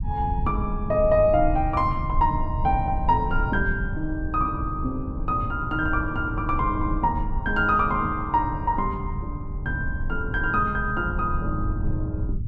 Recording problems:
low-frequency rumble; below 100 Hz, SNR 6 dB

